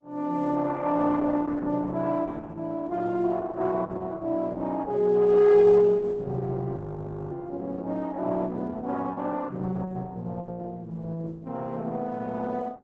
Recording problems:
lossy compression; Opus, log-spectral distance 3 dB, nothing above 7.8 kHz
frozen audio; at 7 s for 0.5 s

